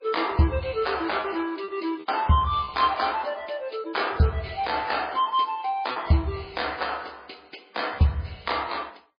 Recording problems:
codec artefacts; MP3, log-spectral distance 7 dB, nothing above 4.4 kHz
lost packets; 4% of the sound replaced, filled with repeated pitch periods

